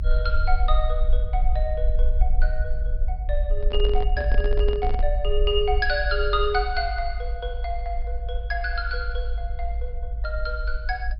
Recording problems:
low-pass filter; nothing above 5.4 kHz
rumble; below 52 Hz, SNR -1 dB
microphone handling noise; from 3.5 to 5 s; peak -3 dB vs average level

